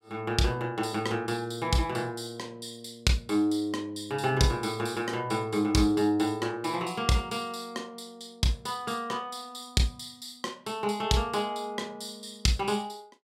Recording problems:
none

